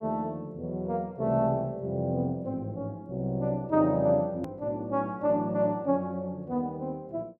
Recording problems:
click at an edit; at 4.5 s

